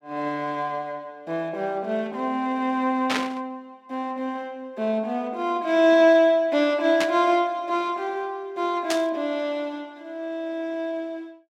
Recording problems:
static burst; at 3 s, at 7 s and at 9 s; peak +2 dB vs average level

